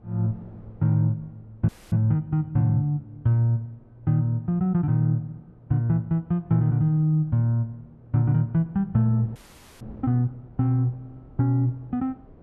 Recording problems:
wind on the microphone; below 350 Hz, SNR 28 dB
audio freezing; at 1.5 s and at 9.5 s

